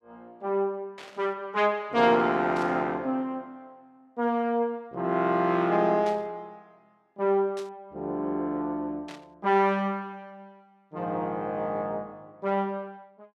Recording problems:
static burst; 5 times, first at 1 s; peak -12 dB vs average level

